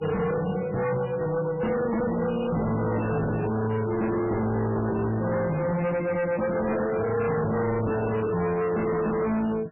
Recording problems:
codec artefacts; MP3, log-spectral distance 5 dB, nothing above 2.8 kHz
distortion; hard clipping, signal-to-distortion ratio 6 dB

